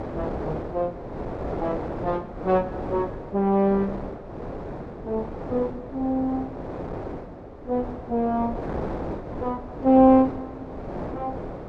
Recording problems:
wind on the microphone; below 670 Hz, SNR 9 dB

